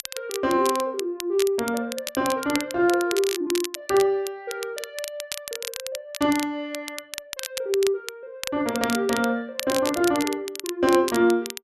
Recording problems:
crackling; vinyl, SNR 9 dB

